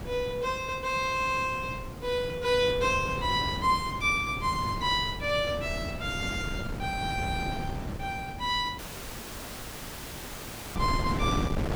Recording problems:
hiss; slope +2 dB per octave, SNR 25 dB
wind noise; below 350 Hz, SNR 7 dB
audio cutting out; at 9 s for 2 s

